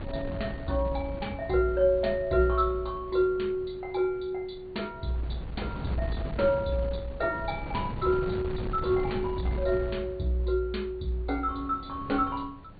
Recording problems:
treble cut off; nothing above 4.6 kHz
wind on the microphone; below 250 Hz, SNR 10 dB

